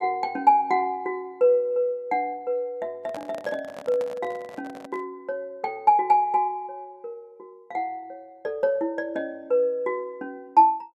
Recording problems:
microphone handling noise; from 3 to 5 s; peak -9 dB vs average level

